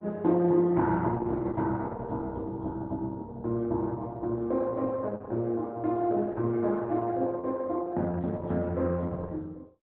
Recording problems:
lossy compression; Opus, log-spectral distance 2 dB

